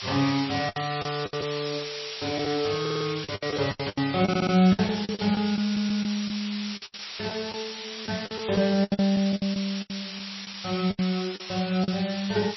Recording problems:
lossy compression; MP3, log-spectral distance 19 dB, nothing above 5.7 kHz
background hiss; slope +4 dB per octave, SNR 8 dB
lost packets; 12% of the sound replaced, filled with the last packet
audio stuttering; at 3 s, at 4.5 s and at 5.5 s

